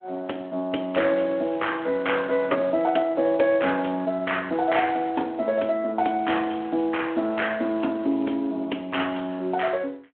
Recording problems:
telephone audio; 220 Hz to 3.4 kHz, Speex
crackling; from 1 to 3 s and from 6.5 to 8 s; loose cable, SNR 29 dB

